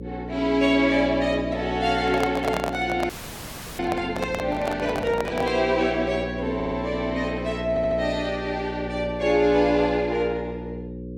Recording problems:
hum; 60 Hz, harmonics up to 540 Hz, SNR 10 dB
microphone handling noise; from 2 to 5.5 s; peak 0 dB vs average level
audio freezing; at 3 s for 0.5 s
audio stuttering; at 6.5 s and at 7.5 s

